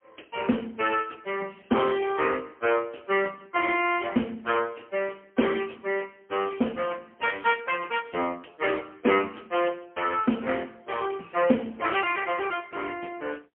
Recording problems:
telephone audio; 170 Hz to 3.2 kHz, AMR-NB, then MP3

